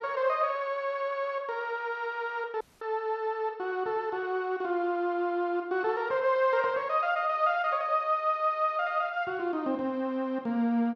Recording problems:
dropout; at 2.5 s

